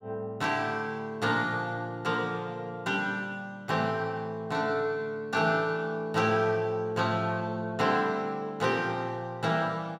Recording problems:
none

